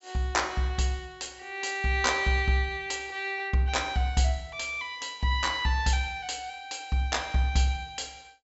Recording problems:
low-pass filter; nothing above 7.6 kHz

